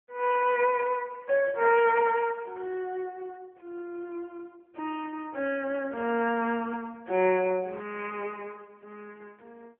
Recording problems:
telephone audio; 320 Hz to 3.2 kHz, AMR-NB

